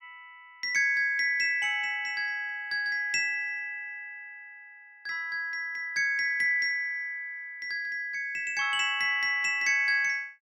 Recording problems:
none

